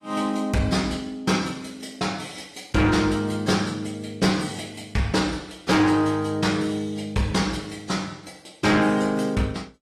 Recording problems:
codec artefacts; AAC, log-spectral distance 4 dB
distortion; soft clipping, signal-to-distortion ratio 10 dB

